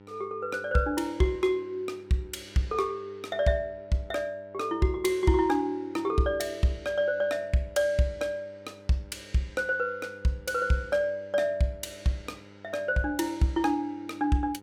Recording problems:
electrical hum; 50 Hz, harmonics up to 1.9 kHz, SNR 24 dB

